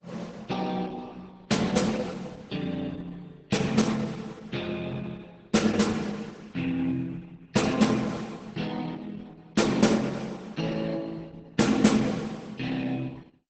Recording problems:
lossy codec; Opus, then Opus, log-spectral distance 4 dB, nothing above 8 kHz

